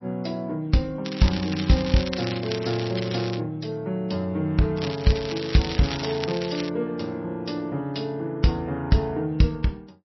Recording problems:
codec artefacts; MP3, log-spectral distance 7 dB, nothing above 5.7 kHz
crackling; from 1 to 3.5 s and from 5 to 6.5 s; loose cable, SNR 10 dB

